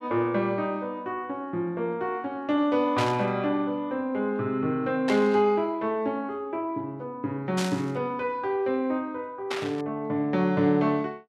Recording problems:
burst of static; 4 times, first at 3 s; peak -1 dB vs average level

